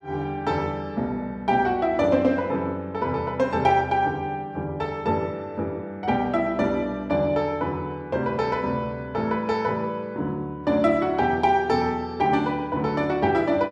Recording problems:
none

